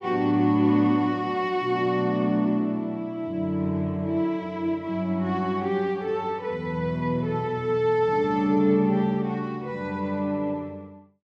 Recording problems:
none

